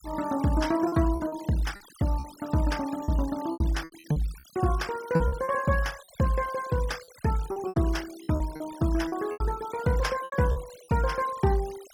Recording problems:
denoising artefacts; signal-to-artefact ratio 18 dB
packet loss; 10% of the sound replaced, filled with repeated pitch periods

